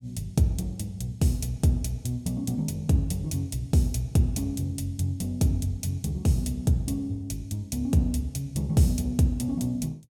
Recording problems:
none

